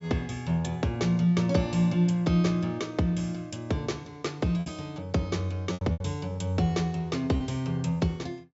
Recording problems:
low-pass filter; nothing above 8 kHz
lost packets; 3% of the sound replaced, filled with repeated pitch periods

